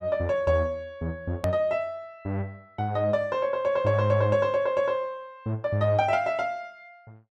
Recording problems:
click at an edit; at 1.5 s

